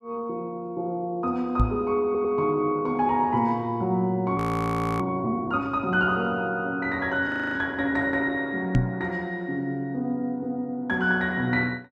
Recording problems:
microphone bump; at 1.5 s and at 9 s; peak +7 dB vs average level
stutter; at 2 s
audio freezing; at 4.5 s for 0.5 s and at 7.5 s

